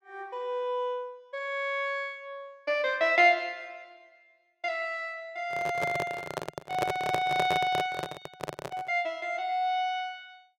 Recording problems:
microphone handling noise; from 5.5 to 9 s; peak +3 dB vs average level

